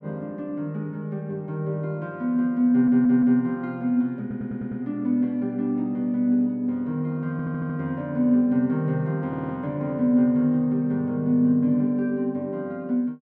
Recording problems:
audio stuttering; 4 times, first at 2.5 s

